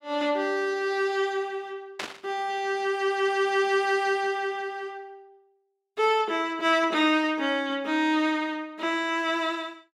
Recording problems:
burst of static; at 2 s; peak -2 dB vs average level

